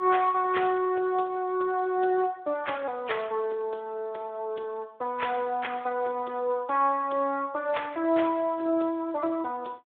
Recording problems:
telephone audio; 300 Hz to 3.6 kHz, Speex

